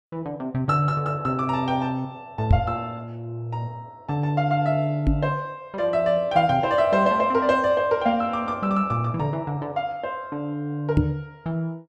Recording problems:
microphone bump; at 2.5 s, at 5 s and at 11 s; peak +8 dB vs average level

